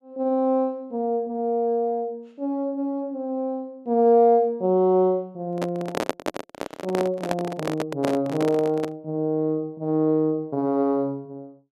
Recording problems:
handling noise; from 5.5 to 9 s; peak +3 dB vs average level

